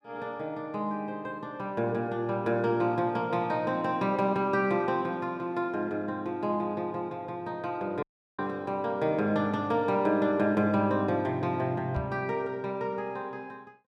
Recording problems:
audio cutting out; at 8 s
knock on the microphone; at 12 s; peak -2 dB vs average level

